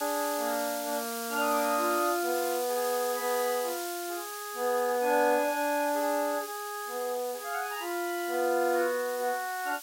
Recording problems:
background hiss; slope +6 dB per octave, SNR 9 dB

